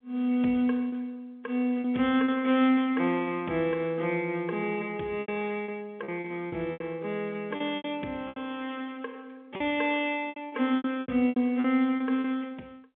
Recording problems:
phone line; 190 Hz to 3.5 kHz, G.711
lost packets; 9% of the sound replaced, filled with repeated pitch periods

